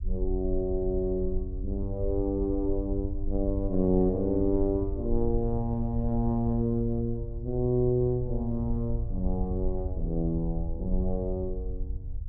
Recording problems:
rumble; below 62 Hz, SNR 6 dB

